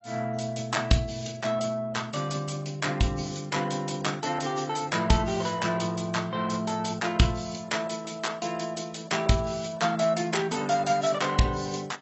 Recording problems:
lossy codec; AAC, log-spectral distance 7 dB, nothing above 7.8 kHz

